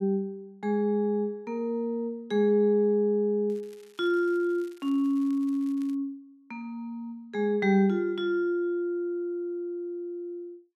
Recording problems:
crackling; from 3.5 to 6 s; loose cable, SNR 30 dB

